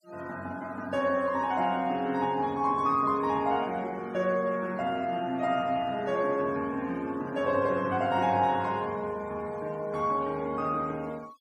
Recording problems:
noise reduction artefacts; signal-to-artefact ratio 25 dB

